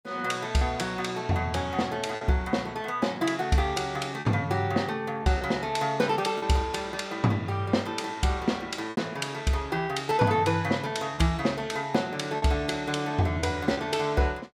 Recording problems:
lost packets; 3% of the sound replaced, filled with repeated pitch periods

